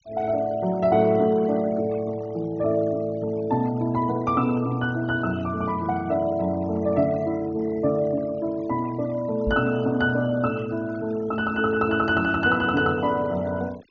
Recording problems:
treble missing; nothing above 6.7 kHz
denoising artefacts; signal-to-artefact ratio 22 dB
knock on the microphone; at 9.5 s; peak -1 dB vs average level

